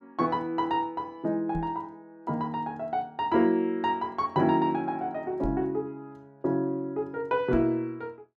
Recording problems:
microphone thump; at 1.5 s, at 5.5 s and at 7.5 s; peak -2 dB vs average level

